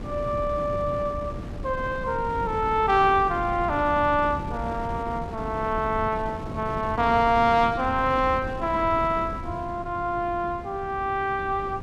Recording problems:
wind on the microphone; below 300 Hz, SNR 11 dB

